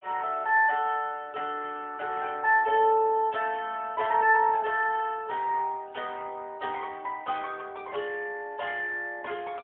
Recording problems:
telephone audio; 280 Hz to 3.4 kHz, AMR-NB, then MP3

